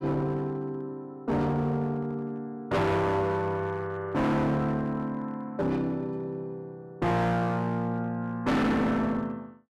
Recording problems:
distortion; hard clipping, uneven, signal-to-distortion ratio 5 dB

